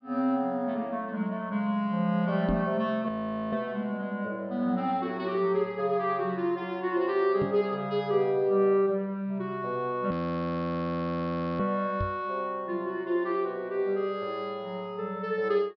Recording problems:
low-pass filter; nothing above 5.5 kHz
knock on the microphone; at 2.5 s, at 7.5 s and at 12 s; peak 0 dB vs average level
frozen audio; at 3 s and at 10 s for 1.5 s

